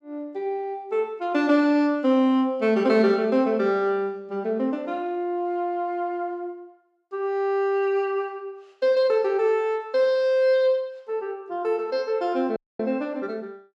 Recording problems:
audio cutting out; at 13 s

